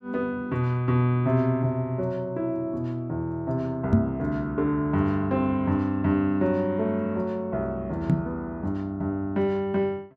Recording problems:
knock on the microphone; at 4 s and at 8 s; peak +10 dB vs average level

